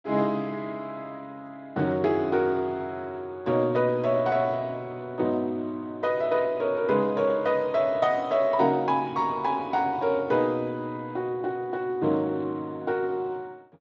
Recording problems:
codec artefacts; Speex, log-spectral distance 2 dB

